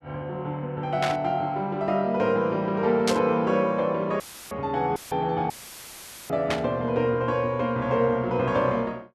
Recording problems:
static burst; at 1 s, at 3 s and at 6.5 s; peak +2 dB vs average level
dropout; at 4 s, at 5 s and at 5.5 s for 1 s; filled with static

